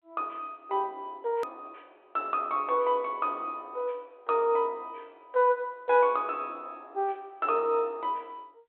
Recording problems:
telephone audio; 260 Hz to 3.8 kHz, G.726
click at an edit; at 1.5 s

